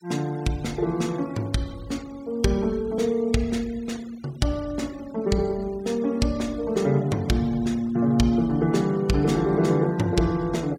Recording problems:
noise reduction artefacts; signal-to-artefact ratio 23 dB

